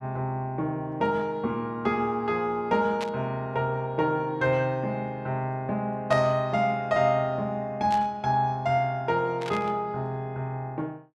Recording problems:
static burst; 4 times, first at 3 s; peak -5 dB vs average level

